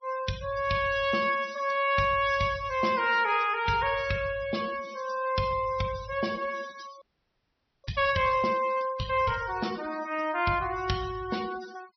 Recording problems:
treble missing; nothing above 5.8 kHz
noise reduction artefacts; signal-to-artefact ratio 16 dB
audio freezing; at 7 s for 1 s

